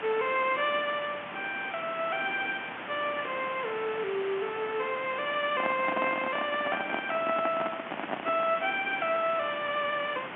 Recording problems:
phone line; 190 Hz to 3.3 kHz, G.711
background hiss; SNR 9 dB
handling noise; from 5.5 to 8.5 s; peak +1 dB vs average level

